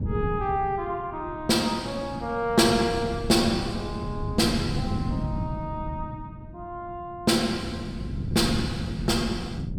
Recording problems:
wind noise; below 200 Hz, SNR 7 dB

